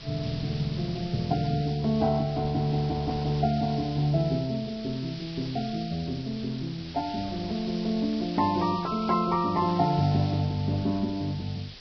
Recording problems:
lossy codec; Vorbis, log-spectral distance 14 dB
hiss; SNR 15 dB
wind on the microphone; below 480 Hz, SNR 22 dB

